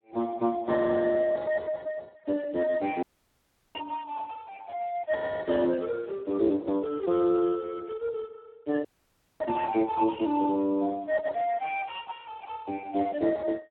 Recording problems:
telephone audio; 260 Hz to 2.6 kHz, Speex
dropout; at 3 s for 0.5 s and at 9 s for 0.5 s

